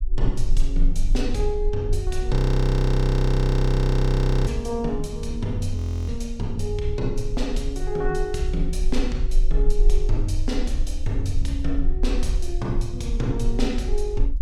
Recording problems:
low-frequency rumble; below 34 Hz, SNR 2 dB
audio freezing; at 2.5 s for 2 s and at 6 s

